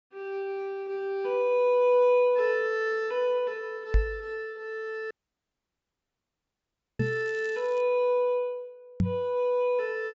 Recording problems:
low-pass filter; nothing above 8 kHz
knock on the microphone; at 4 s, at 7 s and at 9 s; peak +6 dB vs average level
audio cutting out; at 5 s for 2 s
crackling; at 7 s; loose cable, SNR 27 dB

